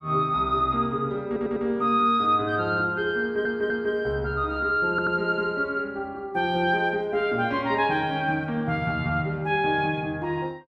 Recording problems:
stutter; at 1.5 s, at 3 s and at 5 s

